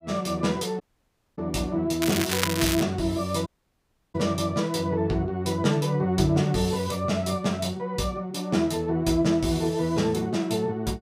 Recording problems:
dropout; at 1 s for 0.5 s and at 3.5 s for 0.5 s
crackle; at 2 s; loose cable, SNR 3 dB

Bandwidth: 15.5 kHz